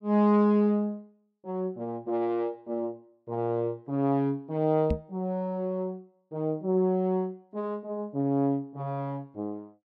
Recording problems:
microphone thump; at 5 s; peak +3 dB vs average level

